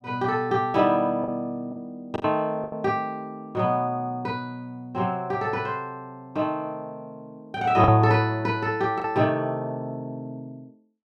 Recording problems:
packet loss; 3% of the sound replaced, filled with the last packet

